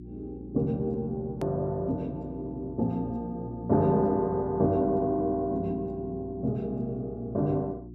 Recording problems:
electrical hum; 60 Hz, harmonics up to 360 Hz, SNR 14 dB
edit click; at 1.5 s

